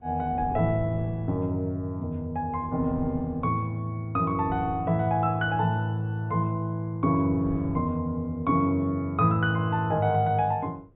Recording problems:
low-pass filter; nothing above 4 kHz
wind on the microphone; below 220 Hz, SNR 16 dB

